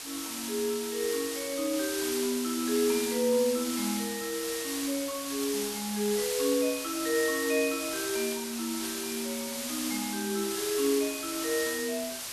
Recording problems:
background hiss; slope +1 dB per octave, SNR 3 dB

